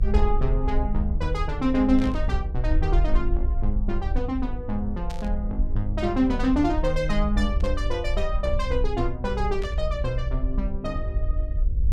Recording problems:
electrical hum; 50 Hz, harmonics up to 600 Hz, SNR 20 dB
rumble; below 56 Hz, SNR 2 dB
burst of static; 4 times, first at 2 s; peak -10 dB vs average level

